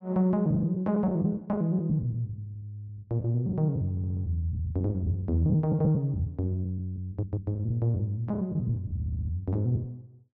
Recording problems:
packet loss; 9% of the sound replaced, filled with the last packet
stutter; at 4 s, at 7 s and at 9 s

